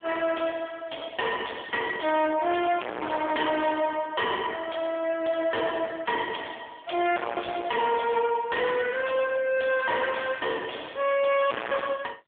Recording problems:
phone line; 300 Hz to 2.9 kHz, AMR-NB
distortion; hard clipping, signal-to-distortion ratio 3 dB

